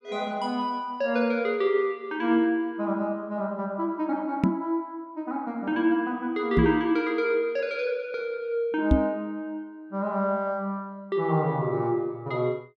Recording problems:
microphone thump; at 4.5 s, at 6.5 s and at 9 s; peak +9 dB vs average level

